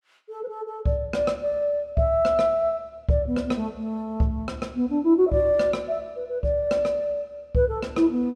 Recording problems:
none

